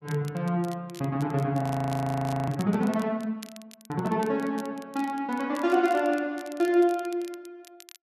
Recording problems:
crackle; vinyl, SNR 22 dB
frozen audio; at 1.5 s for 1 s

